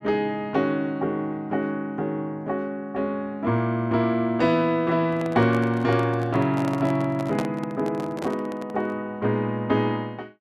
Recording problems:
handling noise; from 5 to 9 s; peak 0 dB vs average level

